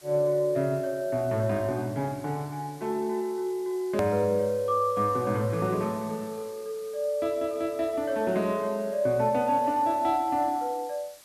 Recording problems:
hiss; slope +1 dB per octave, SNR 23 dB
edit click; at 4 s

